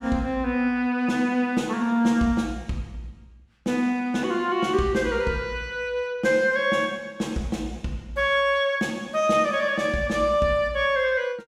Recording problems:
none

